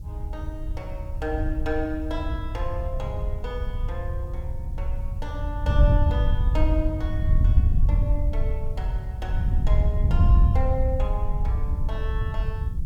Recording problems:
hiss; SNR 29 dB
wind noise; below 84 Hz, SNR -8 dB

